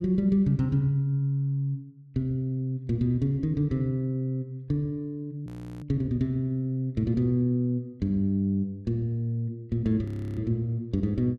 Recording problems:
audio freezing; at 5.5 s and at 10 s

